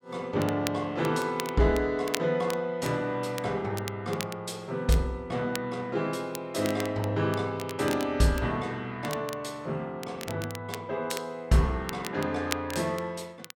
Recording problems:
crackling; vinyl, SNR 12 dB

